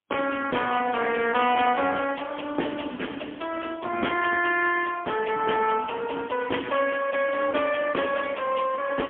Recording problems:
phone line; 260 Hz to 3.3 kHz, AMR-NB, then MP3

